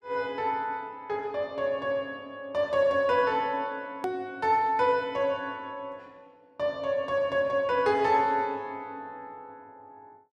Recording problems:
edit click; at 4 s

